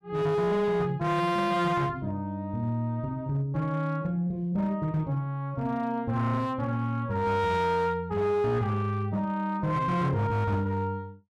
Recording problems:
distortion; hard clipping, signal-to-distortion ratio 11 dB

